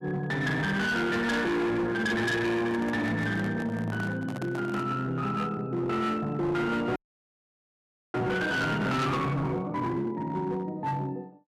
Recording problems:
distorted audio; hard clipping, signal-to-distortion ratio 8 dB
handling noise; from 2.5 to 5 s; peak -5 dB vs average level
audio freezing; at 7 s for 1 s

